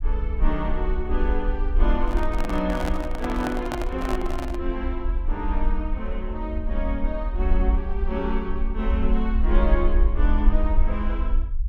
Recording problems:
rumble; below 50 Hz, SNR -2 dB
microphone handling noise; from 2 to 4.5 s; peak +4 dB vs average level

